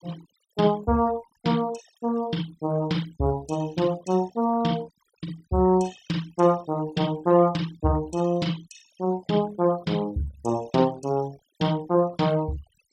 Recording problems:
denoising artefacts; signal-to-artefact ratio 21 dB

